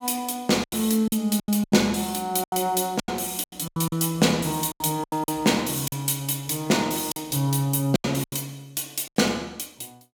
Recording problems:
packet loss; 12% of the sound replaced, filled with silence

